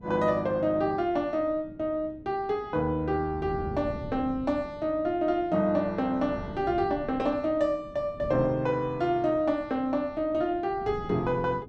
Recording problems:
wind on the microphone; below 270 Hz, SNR 16 dB

